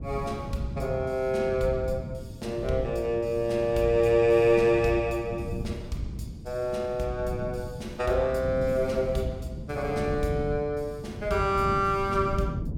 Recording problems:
wind noise; below 200 Hz, SNR 10 dB

